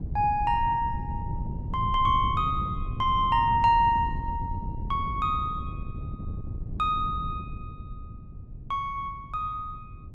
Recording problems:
wind on the microphone; below 140 Hz, SNR 9 dB

